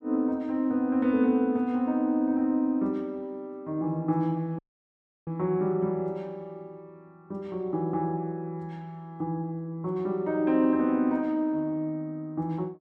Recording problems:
dropout; at 4.5 s for 0.5 s

